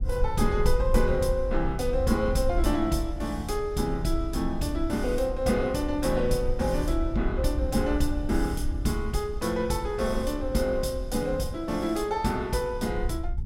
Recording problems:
rumble; below 60 Hz, SNR 6 dB

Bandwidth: 16 kHz